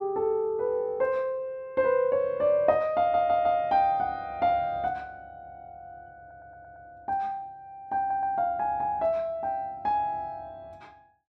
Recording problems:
audio stuttering; at 3 s, at 6 s and at 8 s

